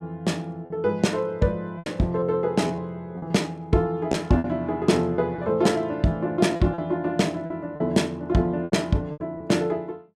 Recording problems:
lost packets; 7% of the sound replaced, filled with repeated pitch periods

